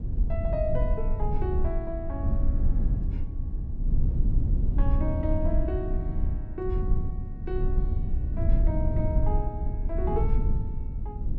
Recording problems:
rumble; below 78 Hz, SNR -6 dB

